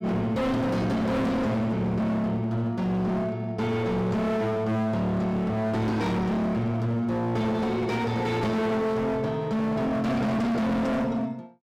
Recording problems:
distortion; hard clipping, signal-to-distortion ratio 6 dB

